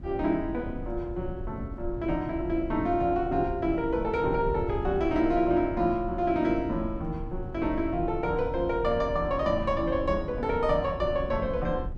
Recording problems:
wind noise; below 110 Hz, SNR 11 dB

